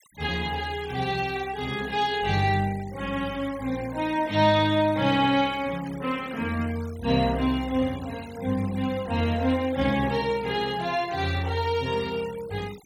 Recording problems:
denoising artefacts; signal-to-artefact ratio 19 dB

